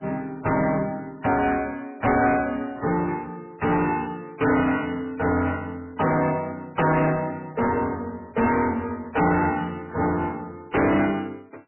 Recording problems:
codec artefacts; MP3, log-spectral distance 4 dB, nothing above 2.4 kHz
distorted audio; soft clipping, signal-to-distortion ratio 7 dB

